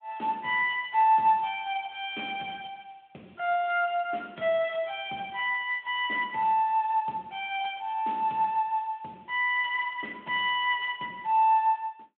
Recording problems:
phone line; 300 Hz to 3.5 kHz, Speex

